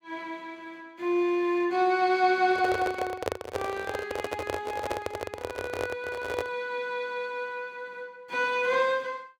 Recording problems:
handling noise; from 2.5 to 6.5 s; peak +3 dB vs average level

